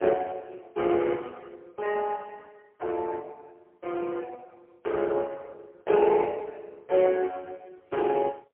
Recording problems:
phone line; 320 Hz to 3.1 kHz, AMR-NB, then MP3

